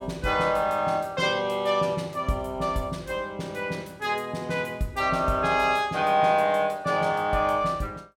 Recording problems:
none

